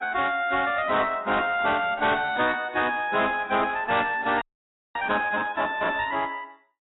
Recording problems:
lossy codec; AAC, log-spectral distance 4 dB, nothing above 3.8 kHz
distorted audio; hard clipping, uneven, signal-to-distortion ratio 11 dB
audio freezing; at 4.5 s for 0.5 s

